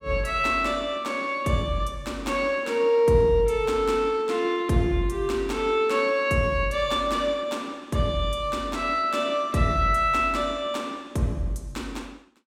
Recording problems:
none

